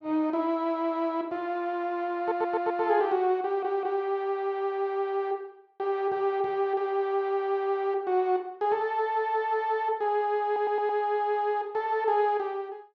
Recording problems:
audio stuttering; at 2 s, at 3.5 s and at 10 s

